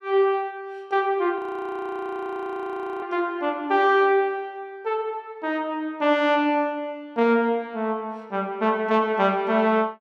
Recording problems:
audio freezing; at 1.5 s for 1.5 s

